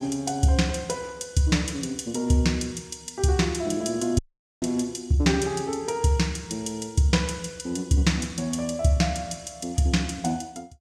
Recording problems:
audio cutting out; at 4 s

